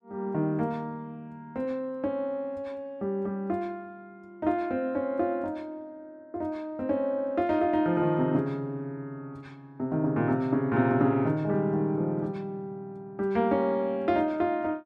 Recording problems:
none

